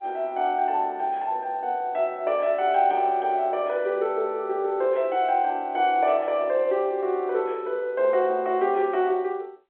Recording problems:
telephone audio; 300 Hz to 3.8 kHz, G.711

